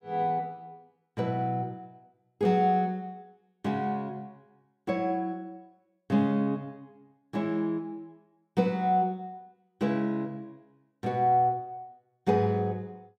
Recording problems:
none

